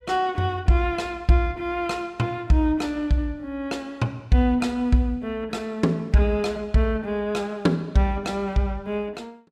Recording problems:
none

